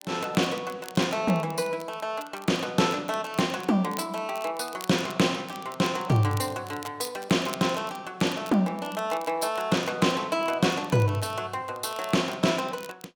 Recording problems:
crackling; vinyl, SNR 20 dB

